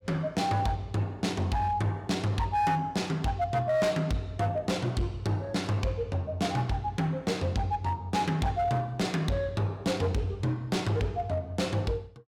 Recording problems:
distorted audio; hard clipping, signal-to-distortion ratio 12 dB

